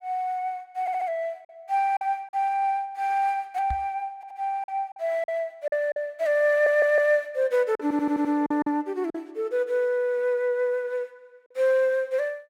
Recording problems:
packet loss; 5% of the sound replaced, filled with silence
audio stuttering; 4 times, first at 1 s
microphone thump; at 3.5 s; peak -4 dB vs average level

